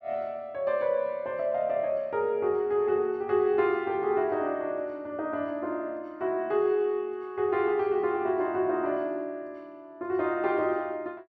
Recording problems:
none

